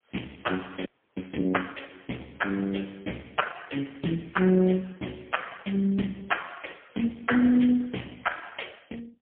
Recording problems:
phone line; 150 Hz to 3.3 kHz, AMR-NB, then MP3
frozen audio; at 1 s

